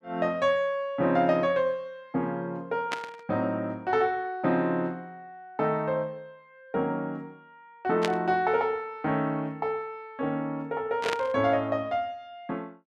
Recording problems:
burst of static; at 3 s, at 8 s and at 11 s; peak +2 dB vs average level

